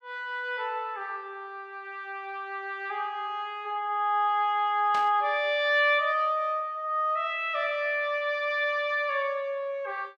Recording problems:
burst of static; at 5 s; peak -7 dB vs average level

